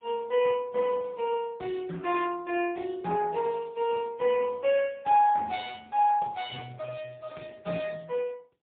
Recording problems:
phone line; 130 Hz to 3.7 kHz, AMR-NB, then MP3

